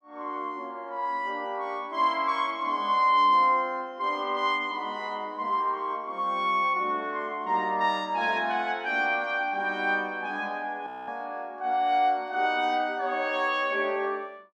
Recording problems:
audio freezing; at 11 s

